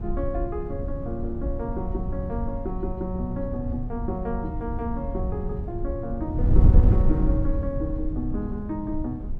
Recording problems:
wind noise; below 92 Hz, SNR -3 dB

